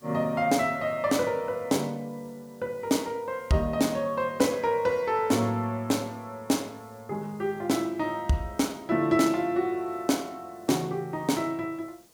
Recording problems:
background hiss; SNR 29 dB

